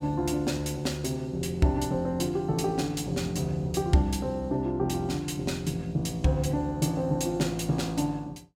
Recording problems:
none

